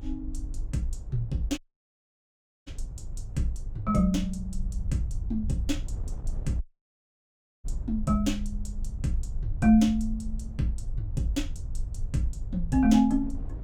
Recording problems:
low-frequency rumble; below 62 Hz, strongest tone 24 Hz, SNR 9 dB
wind on the microphone; below 200 Hz, SNR 21 dB
dropout; at 1.5 s for 1 s and at 6.5 s for 1 s

